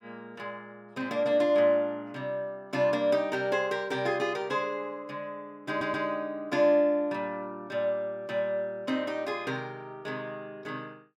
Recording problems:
stutter; at 5.5 s

